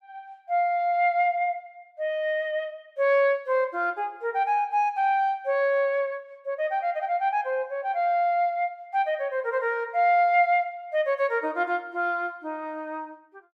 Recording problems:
none

